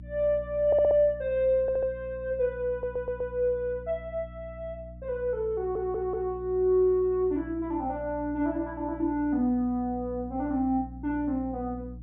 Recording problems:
treble missing; nothing above 4 kHz
hum; 60 Hz, harmonics up to 300 Hz, SNR 16 dB
audio stuttering; 4 times, first at 0.5 s

